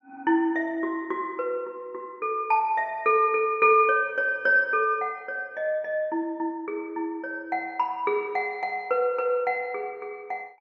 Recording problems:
none

